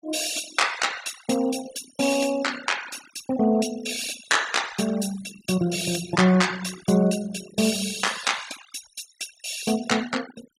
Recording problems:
denoising artefacts; signal-to-artefact ratio 15 dB

